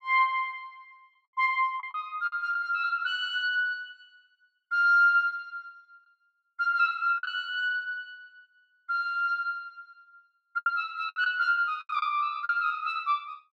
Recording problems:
lost packets; 5% of the sound replaced, filled with the last packet

